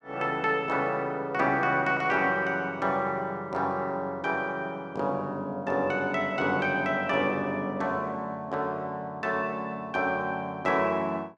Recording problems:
none

